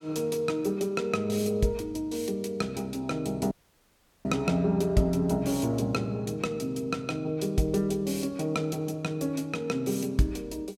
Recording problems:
audio cutting out; at 3.5 s for 0.5 s

